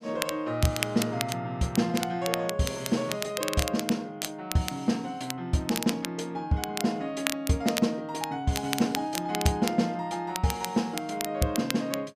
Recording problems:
crackling; vinyl, SNR 6 dB

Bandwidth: 14.5 kHz